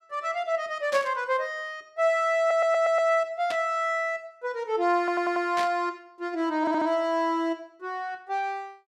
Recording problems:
static burst; at 1 s, at 3.5 s and at 5.5 s; peak -4 dB vs average level
audio stuttering; at 2.5 s, at 5 s and at 6.5 s

